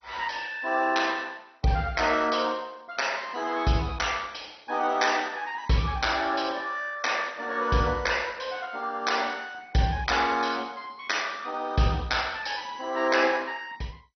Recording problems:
lossy compression; MP2, log-spectral distance 5 dB, nothing above 6 kHz

